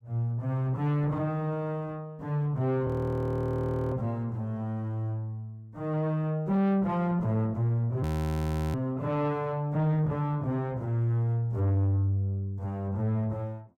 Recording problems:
distorted audio; soft clipping, signal-to-distortion ratio 10 dB
audio freezing; at 3 s for 1 s and at 8 s for 0.5 s

